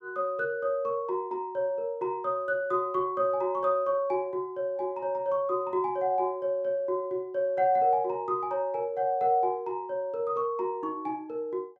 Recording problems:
none

